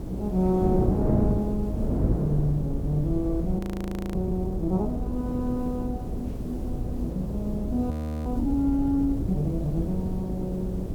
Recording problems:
hum; 50 Hz, harmonics up to 450 Hz, SNR 25 dB
background hiss; slope -1 dB per octave, SNR 28 dB
rumble; below 72 Hz, SNR 8 dB
wind on the microphone; below 320 Hz, SNR 3 dB
frozen audio; at 3.5 s for 0.5 s and at 8 s

